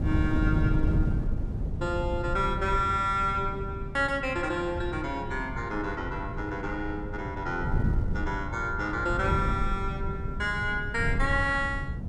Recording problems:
wind noise; below 150 Hz, SNR 3 dB

